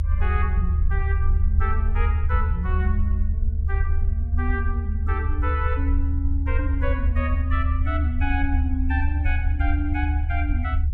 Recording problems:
rumble; below 76 Hz, SNR -7 dB

